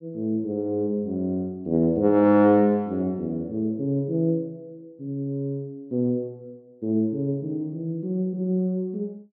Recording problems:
none

